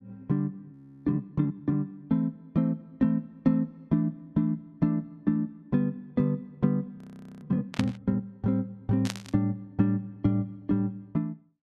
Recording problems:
audio freezing; at 0.5 s and at 7 s
burst of static; at 7.5 s and at 9 s; peak 0 dB vs average level

